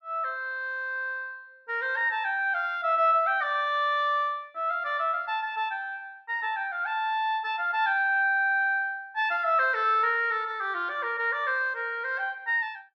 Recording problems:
none

